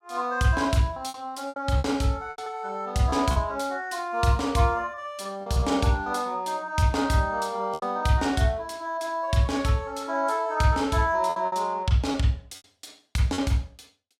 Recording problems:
packet loss; 6% of the sound replaced, filled with repeated pitch periods

